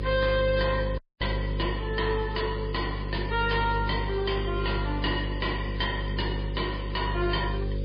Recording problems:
lossy compression; MP3, log-spectral distance 5 dB, nothing above 4.8 kHz
distorted audio; hard clipping, signal-to-distortion ratio 7 dB
hum; 50 Hz, harmonics up to 550 Hz, SNR 3 dB
background hiss; SNR 22 dB
audio cutting out; at 1 s

